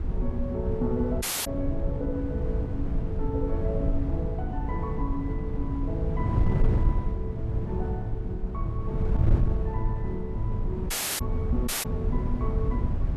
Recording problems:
wind noise; below 110 Hz, SNR -4 dB
dropout; at 1 s, at 11 s and at 12 s

